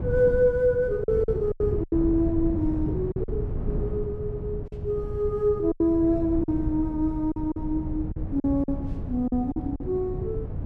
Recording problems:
wind noise; below 160 Hz, SNR 7 dB
packet loss; 8% of the sound replaced, filled with silence

